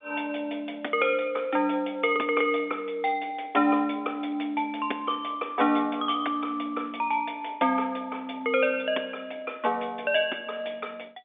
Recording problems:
telephone audio; 240 Hz to 3.6 kHz, G.711

